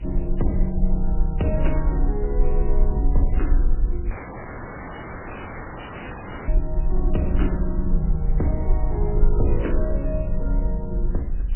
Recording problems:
lossy codec; MP3, log-spectral distance 6 dB, nothing above 2.8 kHz
hum; 60 Hz, harmonics up to 780 Hz, SNR 15 dB
hiss; SNR 26 dB
low-frequency rumble; below 46 Hz, strongest tone 22 Hz, SNR -2 dB
audio cutting out; at 4 s for 2.5 s

